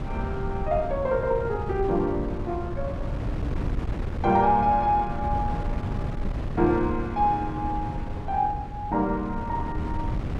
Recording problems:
wind on the microphone; below 170 Hz, SNR 6 dB

